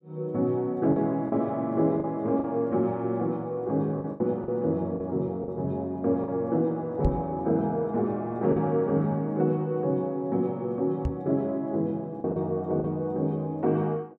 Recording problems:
packet loss; 4% of the sound replaced, filled with the last packet
microphone thump; at 7 s and at 11 s; peak +4 dB vs average level

